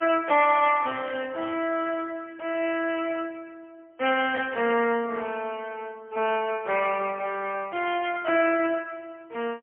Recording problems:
phone line; 280 Hz to 3.2 kHz, AMR-NB, then MP3

